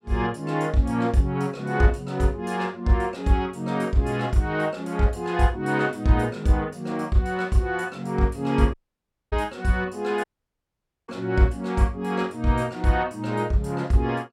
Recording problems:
audio cutting out; at 8.5 s for 0.5 s and at 10 s for 1 s

